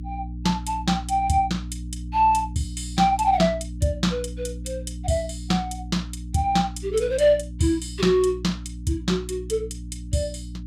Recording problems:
hum; 60 Hz, harmonics up to 300 Hz, SNR 11 dB

